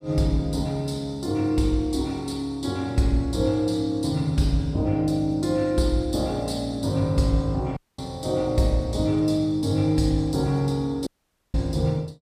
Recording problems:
dropout; at 8 s and at 11 s

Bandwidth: 14.5 kHz